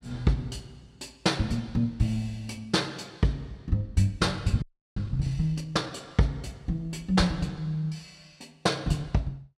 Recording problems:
frozen audio; at 4.5 s

